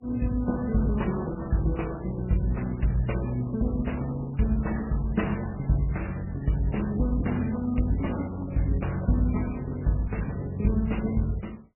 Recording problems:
lossy codec; Opus, then MP3, log-spectral distance 4 dB, nothing above 2.9 kHz

